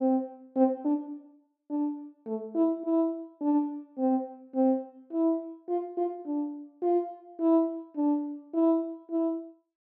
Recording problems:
none

